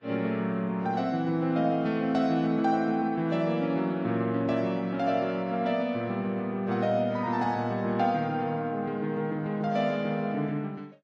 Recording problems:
codec artefacts; Vorbis, log-spectral distance 2 dB

